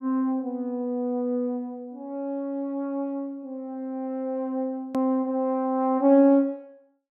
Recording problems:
hard cut with a click; at 5 s

